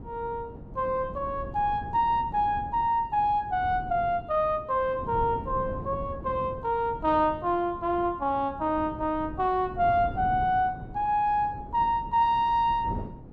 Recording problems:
wind noise; below 270 Hz, SNR 14 dB

